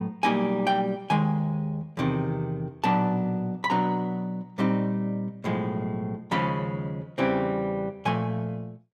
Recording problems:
none

